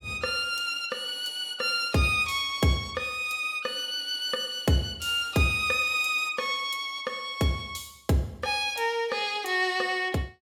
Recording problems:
none

